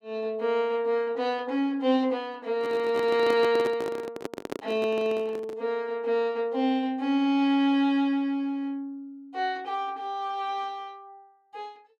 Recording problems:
handling noise; from 2.5 to 5.5 s; peak -2 dB vs average level

